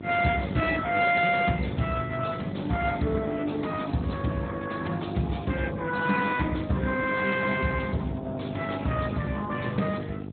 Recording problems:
treble missing; nothing above 3.9 kHz
codec artefacts; Speex, log-spectral distance 4 dB
mains hum; 50 Hz, harmonics up to 950 Hz, SNR 13 dB

